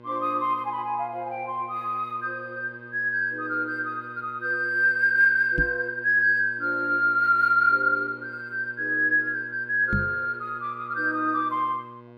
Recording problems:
electrical hum; 60 Hz, harmonics up to 2.6 kHz, SNR 23 dB
microphone thump; at 5.5 s and at 10 s; peak 0 dB vs average level

